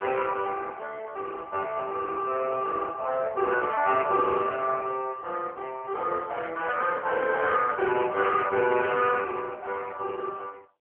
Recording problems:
phone line; 240 Hz to 2 kHz, AMR-NB

